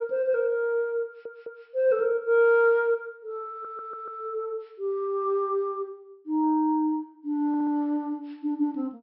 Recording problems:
treble cut off; nothing above 5.4 kHz
audio stuttering; at 1 s, at 3.5 s and at 7.5 s

